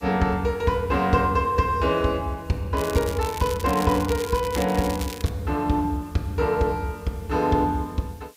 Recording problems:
hiss; SNR 29 dB
crackling; from 3 to 5.5 s; loose cable, SNR 13 dB

